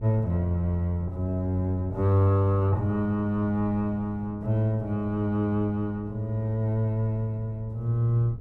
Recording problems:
wind noise; below 140 Hz, SNR 18 dB

